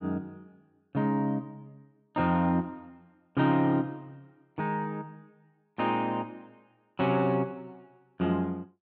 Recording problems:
none

